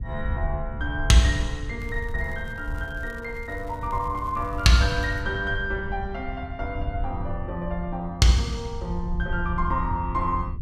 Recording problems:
wind on the microphone; below 80 Hz, SNR 8 dB
crackle; from 2 to 5 s; loose cable, SNR 28 dB

